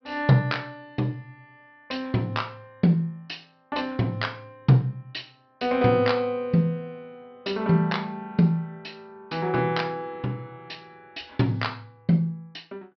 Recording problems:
treble missing; nothing above 5.5 kHz

